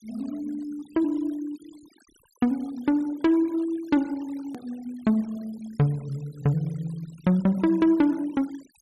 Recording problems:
noise reduction artefacts; signal-to-artefact ratio 26 dB
hard cut with a click; at 4.5 s

